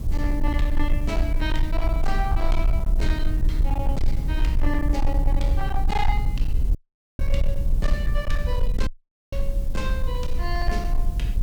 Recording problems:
distorted audio; hard clipping, uneven, signal-to-distortion ratio 12 dB
background hiss; slope +1 dB per octave, SNR 19 dB
low-frequency rumble; below 54 Hz, strongest tone 22 Hz, SNR -5 dB
audio cutting out; at 7 s and at 9 s

